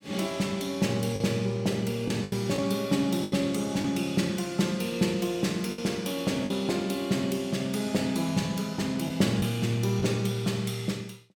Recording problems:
lost packets; 4% of the sound replaced, filled with the last packet

